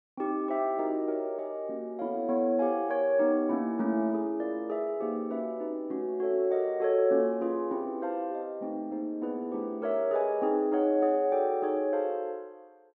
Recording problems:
none

